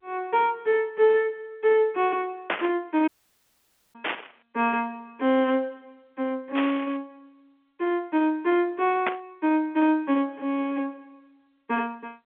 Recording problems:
phone line; 190 Hz to 3.4 kHz, G.711
burst of static; 4 times, first at 2.5 s; peak +3 dB vs average level
audio cutting out; at 3 s for 1 s

